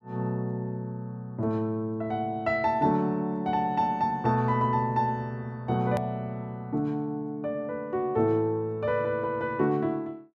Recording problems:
click at an edit; at 6 s

